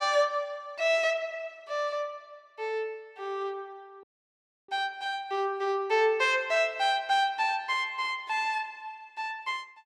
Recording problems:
audio cutting out; at 4 s for 0.5 s

